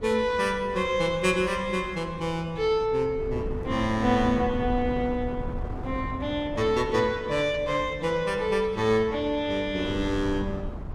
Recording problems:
wind noise; below 220 Hz, SNR 12 dB

